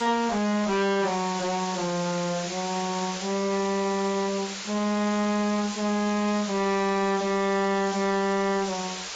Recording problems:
lossy compression; AAC, log-spectral distance 13 dB, nothing above 7.6 kHz
distorted audio; soft clipping, signal-to-distortion ratio 6 dB
hiss; slope 0 dB per octave, SNR 8 dB

